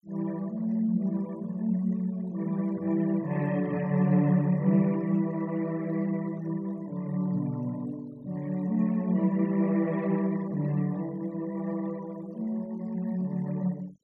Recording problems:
noise reduction artefacts; signal-to-artefact ratio 26 dB

